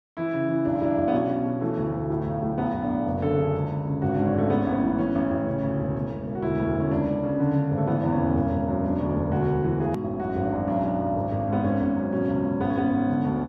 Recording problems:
click at an edit; at 10 s

